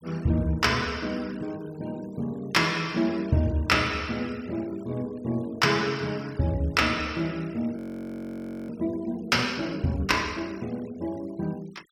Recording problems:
denoising artefacts; signal-to-artefact ratio 24 dB
audio freezing; at 8 s for 1 s

